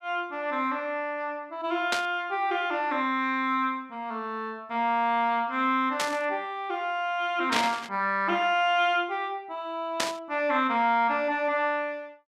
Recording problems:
static burst; 4 times, first at 2 s; peak +5 dB vs average level

